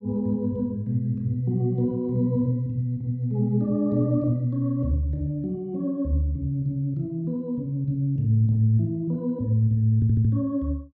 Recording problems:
stutter; at 10 s

